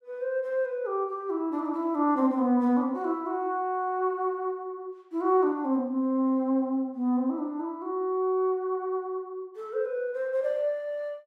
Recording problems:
none

